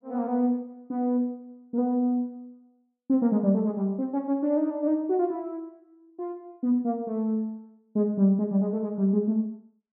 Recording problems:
none

